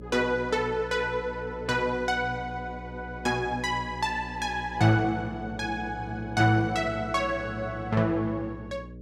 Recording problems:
hum; 60 Hz, harmonics up to 600 Hz, SNR 14 dB

